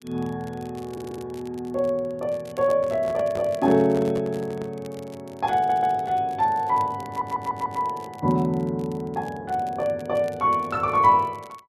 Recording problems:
crackle; vinyl, SNR 27 dB
stutter; at 1 s, at 5.5 s and at 7 s
microphone handling noise; from 3 to 4.5 s; peak -6 dB vs average level

